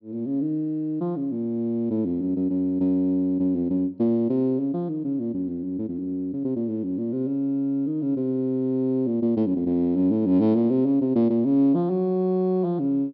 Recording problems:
treble missing; nothing above 5.5 kHz

